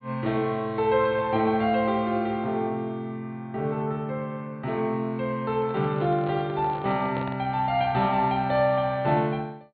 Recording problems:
low-pass filter; nothing above 4.4 kHz
microphone handling noise; from 5.5 to 7.5 s; peak -6 dB vs average level

